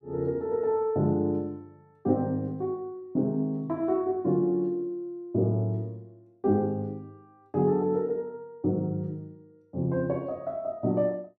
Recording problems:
none

